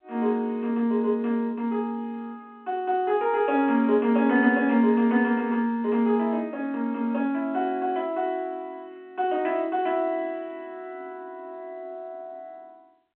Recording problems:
phone line; 170 Hz to 3.4 kHz, G.711

